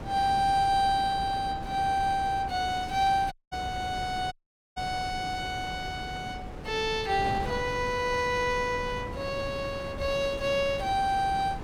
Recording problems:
wind noise; below 540 Hz, SNR 11 dB
audio cutting out; at 3.5 s and at 4.5 s

